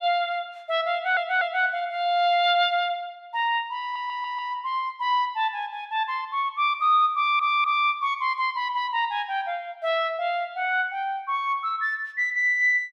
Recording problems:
audio stuttering; at 1 s, at 4 s and at 7 s

